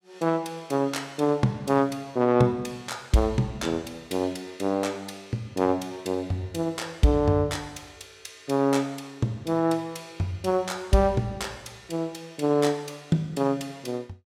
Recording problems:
none

